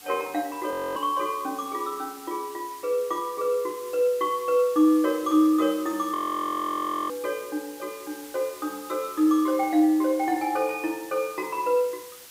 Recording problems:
background hiss; slope +1 dB per octave, SNR 18 dB
audio freezing; at 0.5 s and at 6 s for 1 s

